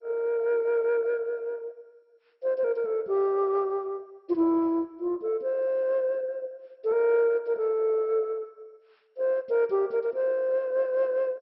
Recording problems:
codec artefacts; MP2, log-spectral distance 2 dB, nothing above 5.3 kHz

